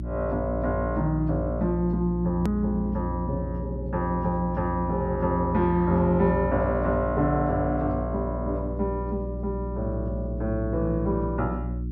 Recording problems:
hum; 60 Hz, harmonics up to 360 Hz, SNR 6 dB
hard cut with a click; at 2.5 s

